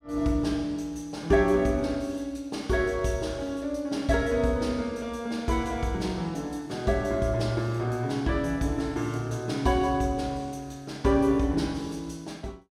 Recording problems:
none

